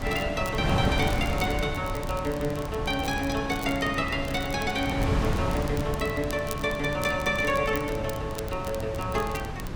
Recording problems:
wind on the microphone; below 420 Hz, SNR 4 dB
crackling; vinyl, SNR 16 dB

